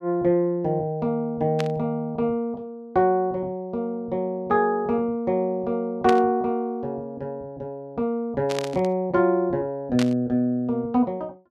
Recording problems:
static burst; 4 times, first at 1.5 s; peak -2 dB vs average level

